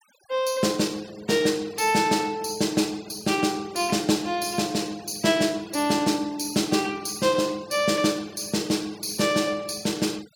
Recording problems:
noise reduction artefacts; signal-to-artefact ratio 22 dB

